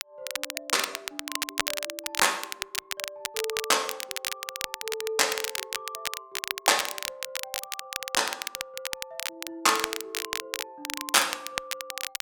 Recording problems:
crackling; vinyl, SNR 5 dB

